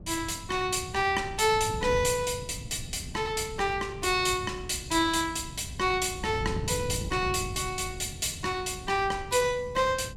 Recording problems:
wind on the microphone; below 170 Hz, SNR 12 dB

